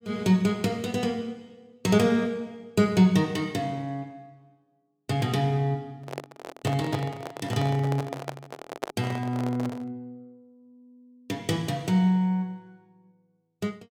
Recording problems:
handling noise; from 6 to 10 s; peak 0 dB vs average level

